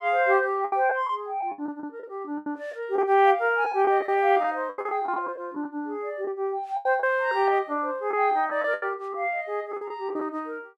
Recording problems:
lost packets; 10% of the sound replaced, filled with the last packet

